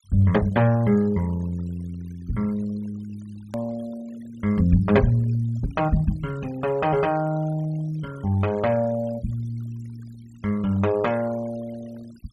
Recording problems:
noise reduction artefacts; signal-to-artefact ratio 23 dB
click at an edit; at 3.5 s

